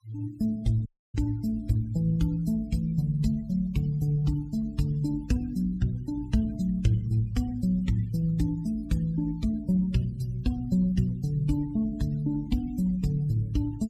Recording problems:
noise reduction artefacts; signal-to-artefact ratio 22 dB
dropout; at 1 s

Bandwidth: 15.5 kHz